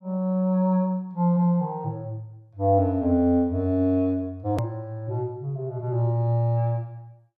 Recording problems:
hard cut with a click; at 4.5 s

